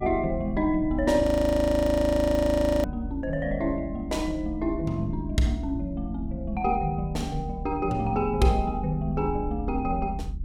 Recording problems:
rumble; below 88 Hz, SNR 8 dB
audio freezing; at 1 s for 1.5 s

